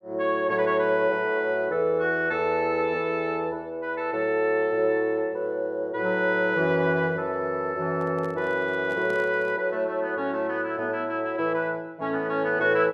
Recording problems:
microphone handling noise; from 8 to 9.5 s; peak -11 dB vs average level

